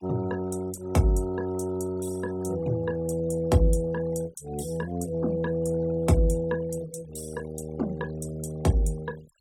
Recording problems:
denoising artefacts; signal-to-artefact ratio 19 dB

